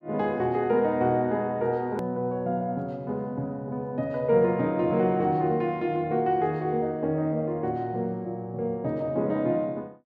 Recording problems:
edit click; at 2 s

